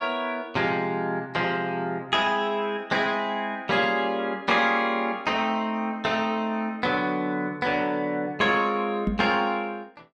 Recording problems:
microphone bump; at 9 s; peak +3 dB vs average level

